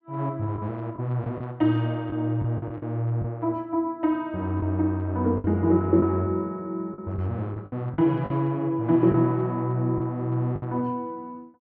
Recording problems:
lost packets; 6% of the sound replaced, filled with the last packet

